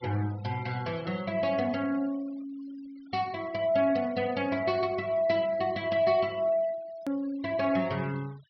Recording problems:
treble cut off; nothing above 5.5 kHz
noise reduction artefacts; signal-to-artefact ratio 22 dB
edit click; at 7 s

